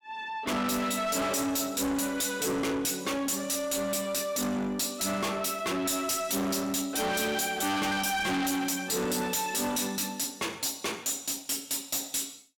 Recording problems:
distortion; soft clipping, signal-to-distortion ratio 6 dB

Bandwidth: 17 kHz